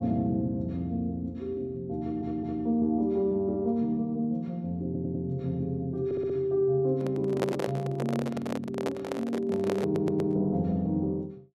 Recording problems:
audio stuttering; 4 times, first at 2 s
handling noise; from 7 to 10 s; peak +3 dB vs average level

